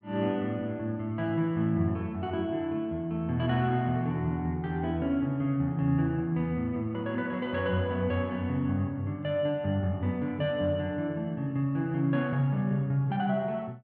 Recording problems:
none

